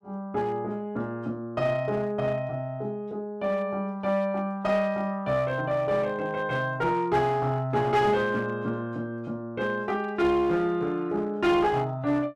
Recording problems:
distorted audio; hard clipping, uneven, signal-to-distortion ratio 10 dB

